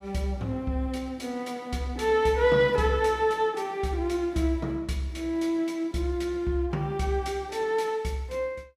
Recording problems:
none

